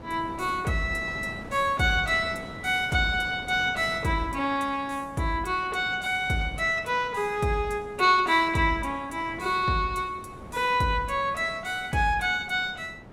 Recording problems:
wind noise; below 640 Hz, SNR 17 dB

